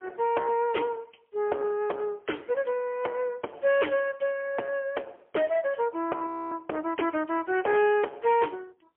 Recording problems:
telephone audio; 280 Hz to 3.3 kHz, AMR-NB, then MP3
distorted audio; soft clipping, signal-to-distortion ratio 12 dB
frozen audio; at 6.5 s

